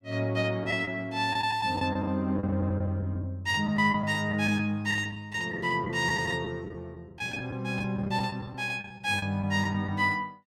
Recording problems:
packet loss; 9% of the sound replaced, filled with the last packet

